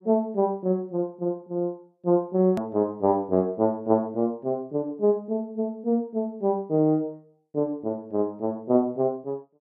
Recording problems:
edit click; at 2.5 s

